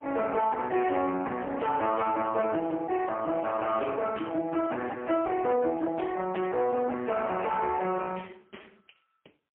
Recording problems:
telephone audio; 280 Hz to 3.1 kHz, AMR-NB, then MP3
distorted audio; soft clipping, signal-to-distortion ratio 13 dB

